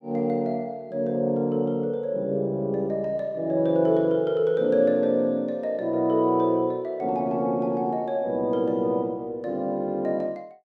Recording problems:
none

